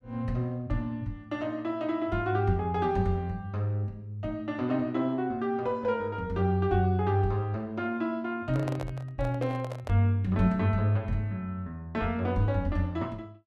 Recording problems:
handling noise; from 8.5 to 10 s; peak -4 dB vs average level

